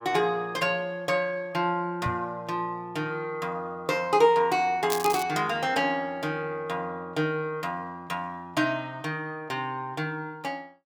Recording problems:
knock on the microphone; at 2 s; peak -1 dB vs average level
crackling; at 5 s; loose cable, SNR 7 dB

